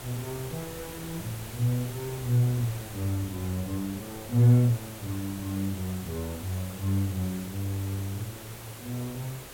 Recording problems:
hiss; slope -4 dB per octave, SNR 12 dB
wind on the microphone; below 160 Hz, SNR 22 dB

